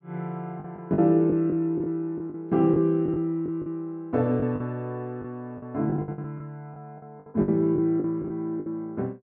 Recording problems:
lost packets; 12% of the sound replaced, filled with the last packet

